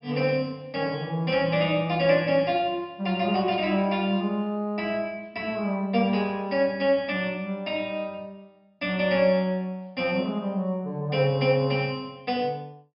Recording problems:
treble cut off; nothing above 5.5 kHz
burst of static; at 3.5 s; peak -16 dB vs average level

